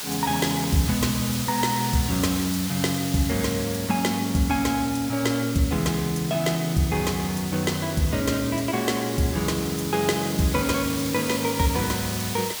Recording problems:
hiss; slope +1 dB per octave, SNR 7 dB

